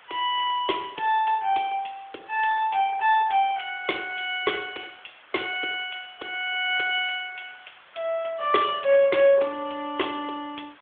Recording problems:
telephone audio; 300 Hz to 3.5 kHz, AMR-NB
background hiss; SNR 26 dB

